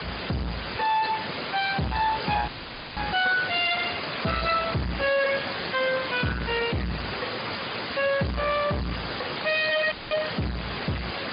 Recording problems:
treble cut off; nothing above 4.9 kHz
lossy compression; Speex, log-spectral distance 13 dB
distorted audio; soft clipping, signal-to-distortion ratio 7 dB
background hiss; SNR 5 dB
dropout; at 2.5 s and at 10 s; filled with static

